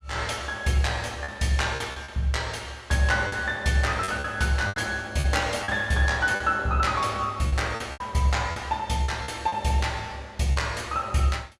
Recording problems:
lost packets; 7% of the sound replaced, filled with repeated pitch periods

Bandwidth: 14.5 kHz